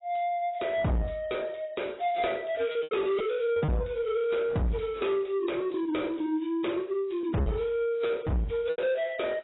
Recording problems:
lossy codec; AAC, log-spectral distance 4 dB, nothing above 3.8 kHz
distortion; soft clipping, signal-to-distortion ratio 6 dB
lost packets; 5% of the sound replaced, filled with repeated pitch periods

